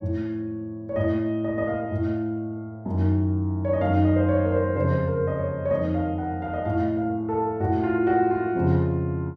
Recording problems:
none

